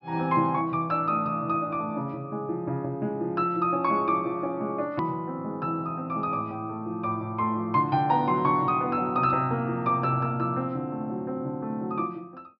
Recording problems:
treble cut off; nothing above 5.5 kHz
click at an edit; at 5 s

